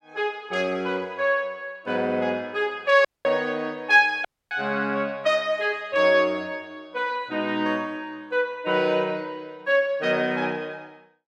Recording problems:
dropout; at 3 s and at 4.5 s

